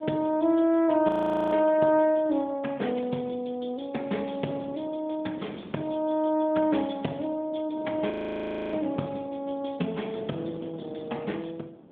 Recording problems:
phone line; 150 Hz to 3.6 kHz, AMR-NB
wind on the microphone; below 490 Hz, SNR 19 dB
frozen audio; at 1 s and at 8 s for 0.5 s

